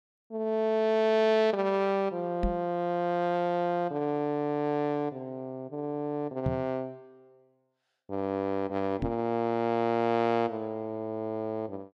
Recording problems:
microphone bump; at 2.5 s, at 6.5 s and at 9 s; peak +2 dB vs average level

